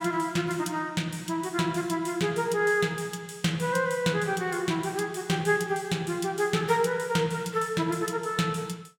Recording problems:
none

